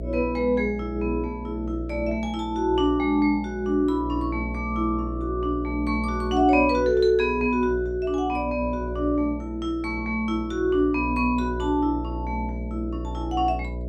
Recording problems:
hum; 60 Hz, harmonics up to 660 Hz, SNR 9 dB

